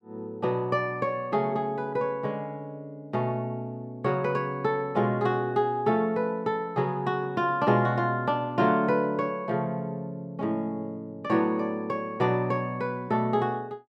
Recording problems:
none

